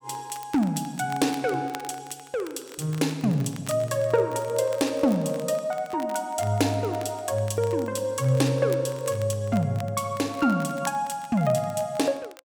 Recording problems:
crackling; vinyl, SNR 21 dB

